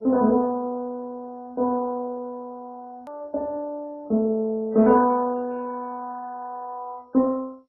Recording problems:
lossy compression; MP3, then MP2, log-spectral distance 2 dB
click at an edit; at 3 s

